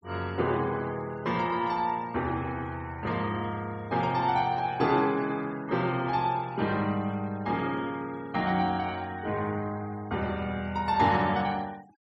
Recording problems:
noise reduction artefacts; signal-to-artefact ratio 24 dB

